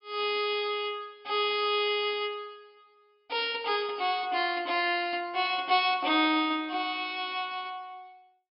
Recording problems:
treble missing; nothing above 5.5 kHz

